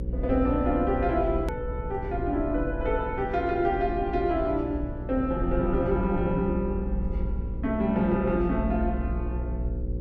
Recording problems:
hum; 60 Hz, harmonics up to 540 Hz, SNR 8 dB
low-frequency rumble; below 76 Hz, strongest tone 42 Hz, SNR 9 dB
hard cut with a click; at 1.5 s

